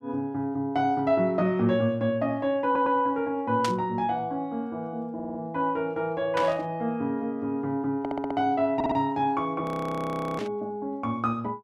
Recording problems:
stutter; 4 times, first at 2.5 s
static burst; at 3.5 s, at 6.5 s and at 10 s; peak 0 dB vs average level
audio freezing; at 9.5 s for 1 s

